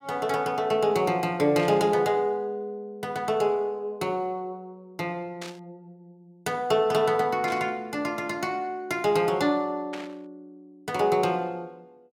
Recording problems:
burst of static; 4 times, first at 1.5 s; peak -8 dB vs average level

